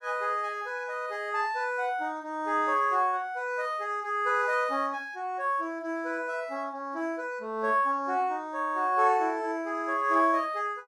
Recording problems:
none

